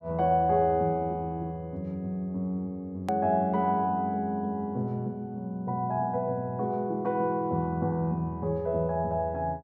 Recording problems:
edit click; at 3 s

